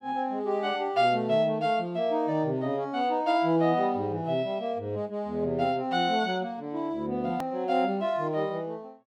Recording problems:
click at an edit; at 7.5 s

